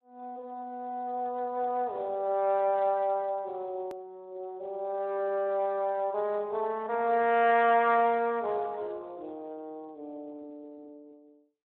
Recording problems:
phone line; 260 Hz to 3.7 kHz, Speex
click at an edit; at 4 s

